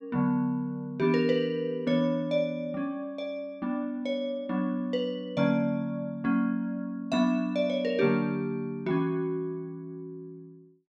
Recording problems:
none

